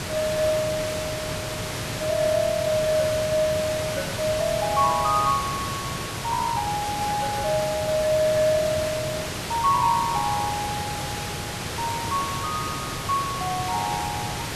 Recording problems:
background hiss; slope -3 dB per octave, SNR 4 dB

